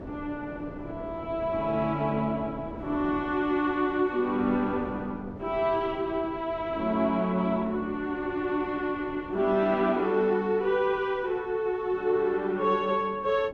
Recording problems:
wind on the microphone; below 500 Hz, SNR 16 dB

